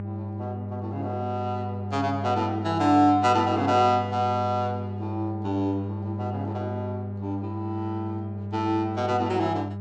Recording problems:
electrical hum; 50 Hz, harmonics up to 800 Hz, SNR 7 dB

